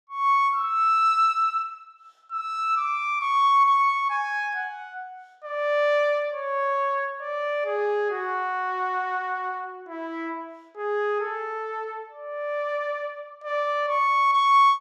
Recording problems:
none

